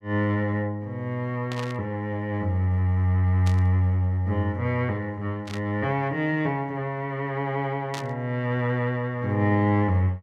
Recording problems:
burst of static; 4 times, first at 1.5 s; peak -6 dB vs average level

